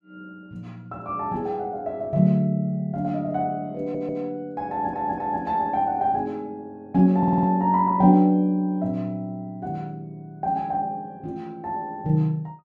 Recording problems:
audio stuttering; at 4 s, at 4.5 s and at 7 s

